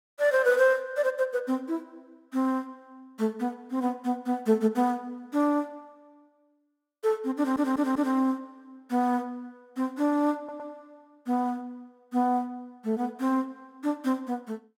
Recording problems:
audio stuttering; at 7.5 s and at 10 s

